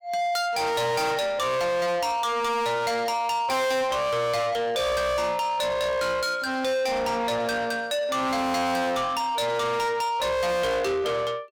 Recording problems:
distortion; soft clipping, signal-to-distortion ratio 6 dB

